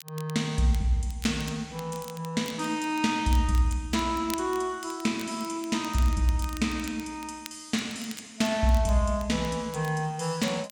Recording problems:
crackling; vinyl, SNR 18 dB

